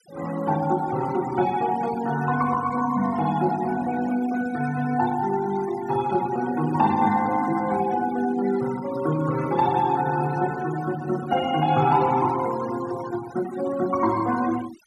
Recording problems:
denoising artefacts; signal-to-artefact ratio 16 dB

